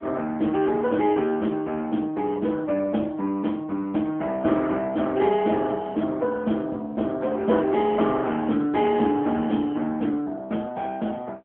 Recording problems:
phone line; 170 Hz to 3.4 kHz, AMR-NB

